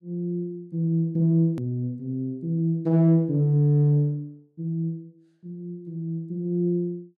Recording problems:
hard cut with a click; at 1.5 s

